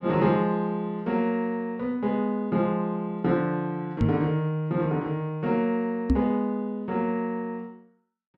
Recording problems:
microphone thump; at 4 s and at 6 s; peak +8 dB vs average level

